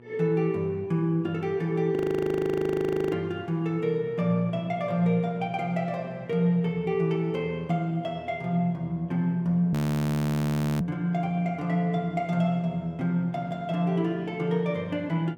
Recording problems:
electrical hum; 60 Hz, harmonics up to 1.4 kHz, SNR 23 dB
audio freezing; at 2 s for 1 s and at 9.5 s for 1 s

